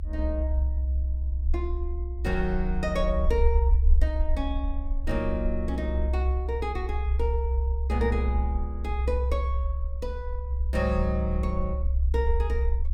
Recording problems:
rumble; below 66 Hz, strongest tone 66 Hz, SNR -4 dB

